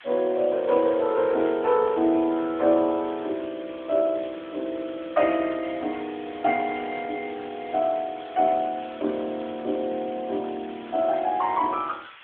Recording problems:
phone line; 260 Hz to 3.5 kHz, AMR-NB
hiss; SNR 20 dB

